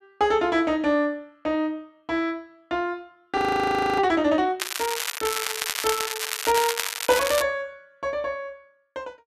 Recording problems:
frozen audio; at 3.5 s for 0.5 s
crackle; from 4.5 to 7.5 s; loose cable, SNR 2 dB

